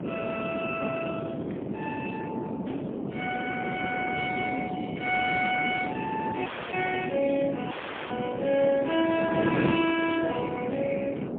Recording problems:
phone line; 220 Hz to 3.3 kHz, AMR-NB, then MP3
wind noise; below 450 Hz, SNR 4 dB
dropout; at 6.5 s and at 7.5 s

